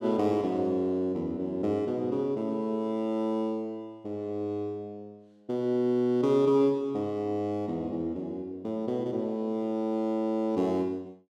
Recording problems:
none

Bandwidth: 14.5 kHz